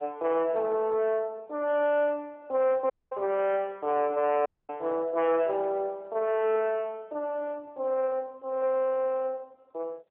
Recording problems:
phone line; 340 Hz to 2 kHz, AMR-NB
distorted audio; soft clipping, signal-to-distortion ratio 10 dB
dropout; at 3 s and at 4.5 s

